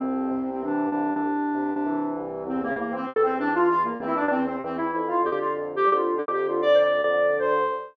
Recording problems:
lost packets; 7% of the sound replaced, filled with repeated pitch periods

